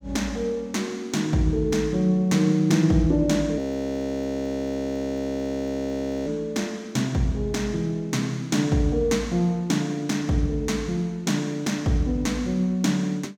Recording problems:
audio freezing; at 3.5 s for 2.5 s

